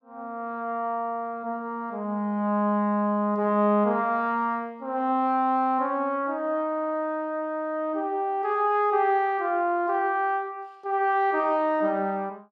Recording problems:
stutter; at 6.5 s

